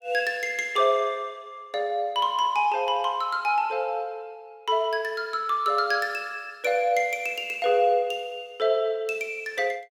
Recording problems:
none

